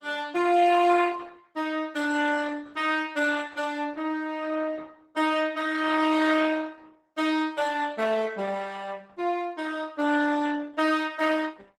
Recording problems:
lossy codec; Opus, log-spectral distance 4 dB, nothing above 15.5 kHz

